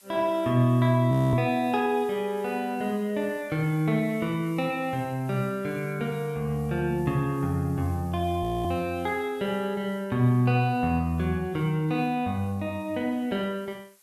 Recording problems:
background hiss; slope +1 dB per octave, SNR 27 dB
frozen audio; at 1 s and at 8.5 s

